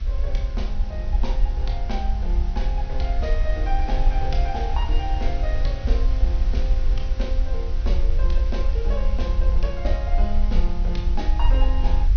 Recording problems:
treble missing; nothing above 6.1 kHz
hiss; SNR 12 dB
low-frequency rumble; below 54 Hz, SNR -8 dB

